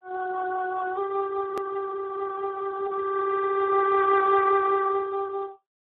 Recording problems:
phone line; 22 Hz to 2.7 kHz, Speex
edit click; at 1.5 s

